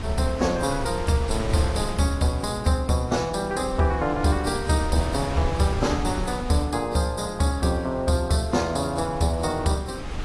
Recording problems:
lossy codec; AAC, log-spectral distance 4 dB
hum; 60 Hz, harmonics up to 360 Hz, SNR 19 dB
wind noise; below 330 Hz, SNR 10 dB

